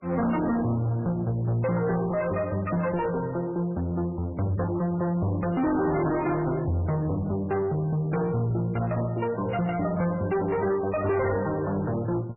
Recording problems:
codec artefacts; MP3, log-spectral distance 3 dB, nothing above 2.3 kHz
distortion; soft clipping, signal-to-distortion ratio 6 dB

